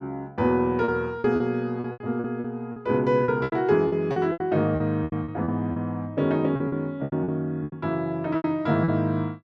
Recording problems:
packet loss; 14% of the sound replaced, filled with repeated pitch periods

